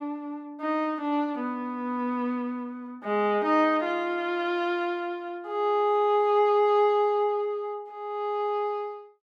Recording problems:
none

